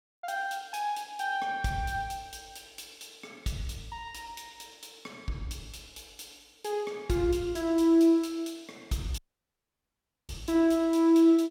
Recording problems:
dropout; at 9 s for 1 s

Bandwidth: 17 kHz